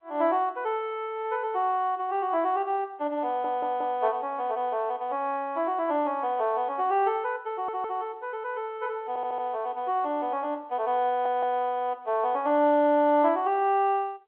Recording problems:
telephone audio; 260 Hz to 3.5 kHz, G.711
stutter; 4 times, first at 3.5 s

